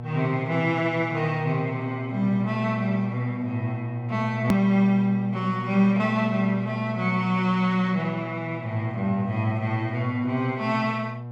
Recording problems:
hum; 60 Hz, harmonics up to 840 Hz, SNR 8 dB
hard cut with a click; at 4.5 s

